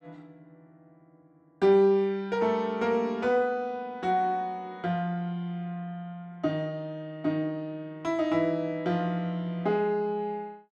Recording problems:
none

